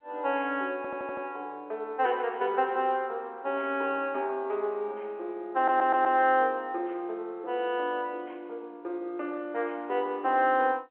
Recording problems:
phone line; 320 Hz to 3.2 kHz, G.711
stutter; at 1 s and at 5.5 s

